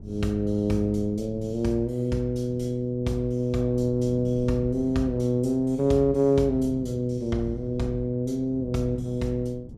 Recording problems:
wind noise; below 200 Hz, SNR 17 dB

